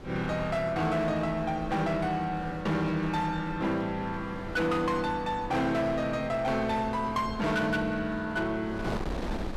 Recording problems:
distortion; hard clipping, signal-to-distortion ratio 11 dB
wind noise; below 570 Hz, SNR 12 dB

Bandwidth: 14.5 kHz